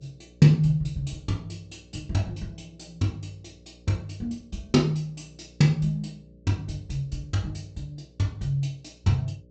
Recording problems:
low-pass filter; nothing above 8 kHz
electrical hum; 60 Hz, harmonics up to 600 Hz, SNR 27 dB

